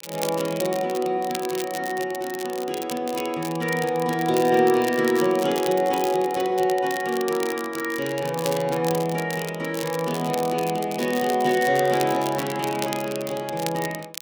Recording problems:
crackle; vinyl, SNR 12 dB

